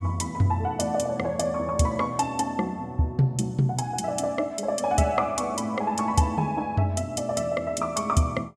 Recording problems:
none

